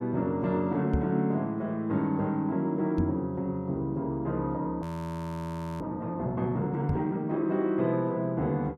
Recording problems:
knock on the microphone; at 1 s, at 3 s and at 7 s; peak +4 dB vs average level
audio freezing; at 5 s for 1 s

